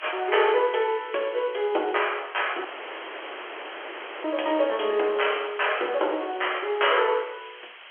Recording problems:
telephone audio; 320 Hz to 3.3 kHz, G.711
background hiss; SNR 18 dB
dropout; at 2.5 s for 1.5 s

